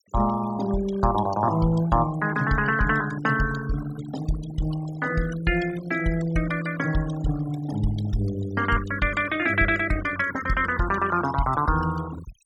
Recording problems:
noise reduction artefacts; signal-to-artefact ratio 14 dB

